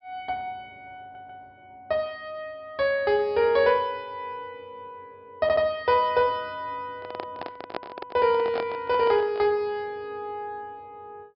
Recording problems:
treble cut off; nothing above 5.5 kHz
stutter; at 1 s and at 5.5 s
handling noise; from 7 to 9.5 s; peak -2 dB vs average level

